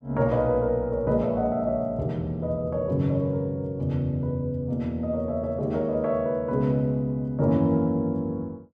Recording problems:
none

